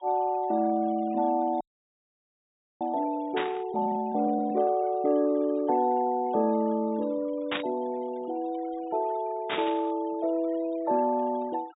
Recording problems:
treble missing; nothing above 3.8 kHz
denoising artefacts; signal-to-artefact ratio 26 dB
audio freezing; at 1.5 s for 1 s
static burst; at 3.5 s, at 7.5 s and at 9.5 s; peak +1 dB vs average level

